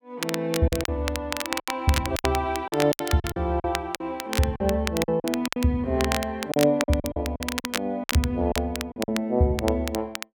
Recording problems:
crackling; vinyl, SNR 7 dB
packet loss; 11% of the sound replaced, filled with silence

